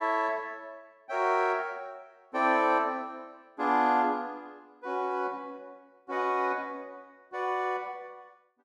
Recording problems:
none

